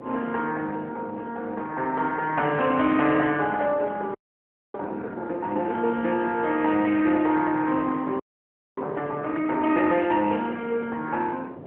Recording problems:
phone line; 280 Hz to 3.2 kHz, AMR-NB
wind on the microphone; below 570 Hz, SNR 15 dB
frozen audio; at 4 s for 0.5 s and at 8 s for 0.5 s

